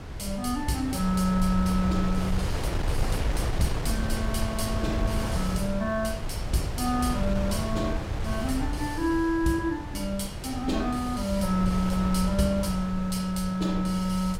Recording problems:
wind noise; below 170 Hz, SNR 4 dB

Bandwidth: 16 kHz